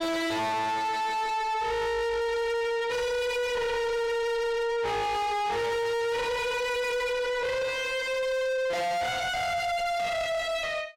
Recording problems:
distorted audio; soft clipping, signal-to-distortion ratio 5 dB

